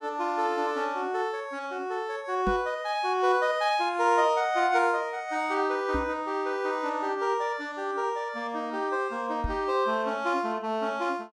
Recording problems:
microphone thump; at 2.5 s, at 6 s and at 9.5 s; peak 0 dB vs average level

